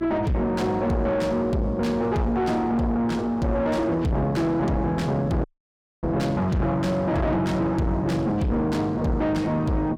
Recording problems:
distorted audio; soft clipping, signal-to-distortion ratio 7 dB
hum; 60 Hz, harmonics up to 780 Hz, SNR 20 dB
audio cutting out; at 5.5 s for 0.5 s

